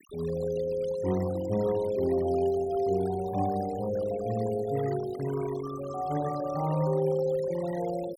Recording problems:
denoising artefacts; signal-to-artefact ratio 17 dB

